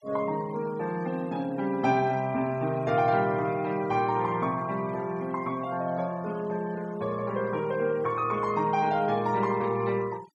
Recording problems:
noise reduction artefacts; signal-to-artefact ratio 22 dB

